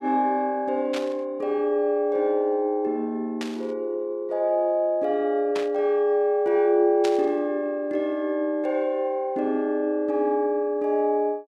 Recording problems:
static burst; 4 times, first at 1 s; peak -5 dB vs average level

